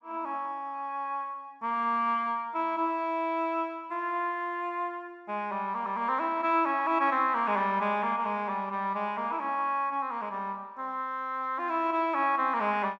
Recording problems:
none

